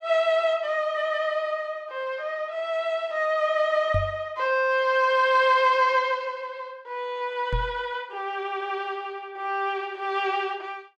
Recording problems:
knock on the microphone; at 4 s and at 7.5 s; peak +1 dB vs average level

